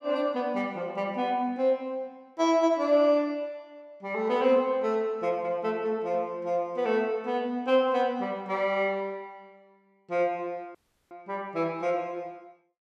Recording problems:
audio cutting out; at 11 s

